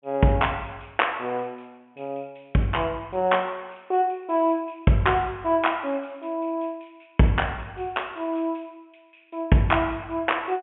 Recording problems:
treble cut off; nothing above 3.3 kHz

